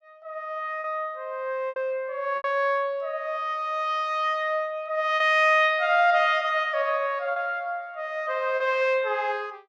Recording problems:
packet loss; 3% of the sound replaced, filled with repeated pitch periods

